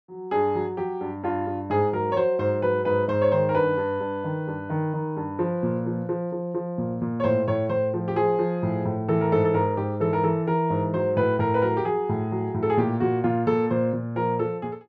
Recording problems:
none

